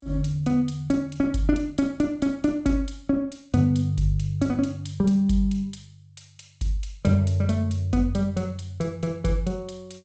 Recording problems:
lossy codec; G.722, log-spectral distance 4 dB, nothing above 7.8 kHz

